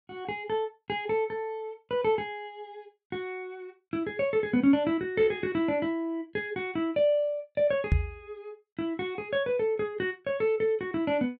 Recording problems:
knock on the microphone; at 8 s; peak +8 dB vs average level

